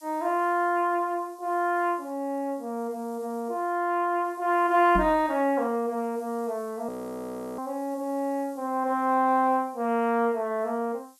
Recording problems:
hiss; SNR 28 dB
microphone thump; at 5 s; peak 0 dB vs average level
audio freezing; at 7 s for 0.5 s

